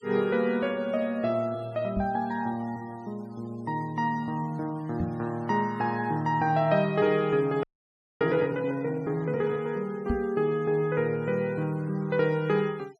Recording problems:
noise reduction artefacts; signal-to-artefact ratio 27 dB
microphone bump; at 2 s, at 5 s and at 10 s; peak +2 dB vs average level
frozen audio; at 7.5 s for 0.5 s

